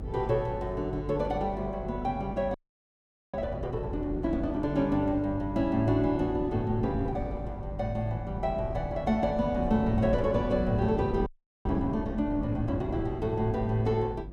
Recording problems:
hum; 50 Hz, harmonics up to 400 Hz, SNR 13 dB
wind on the microphone; below 220 Hz, SNR 10 dB
audio freezing; at 2.5 s for 1 s and at 11 s

